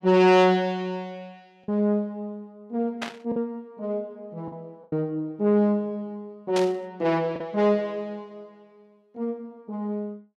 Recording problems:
distortion; soft clipping, signal-to-distortion ratio 11 dB
lost packets; 3% of the sound replaced, filled with the last packet
static burst; at 3 s and at 6.5 s; peak -2 dB vs average level

